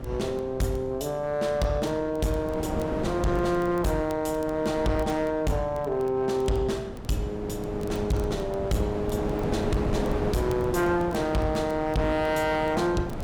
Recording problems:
distorted audio; hard clipping, uneven, signal-to-distortion ratio 10 dB
wind on the microphone; below 510 Hz, SNR 8 dB
crackling; vinyl, SNR 28 dB

